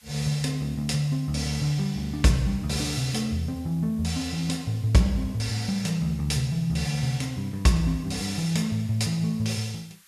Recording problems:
hiss; SNR 27 dB

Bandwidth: 13.5 kHz